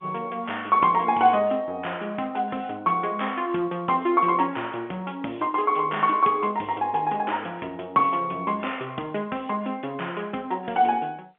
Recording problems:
phone line; 220 Hz to 3.4 kHz, G.711

